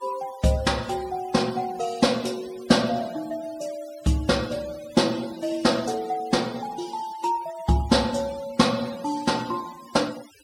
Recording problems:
denoising artefacts; signal-to-artefact ratio 19 dB

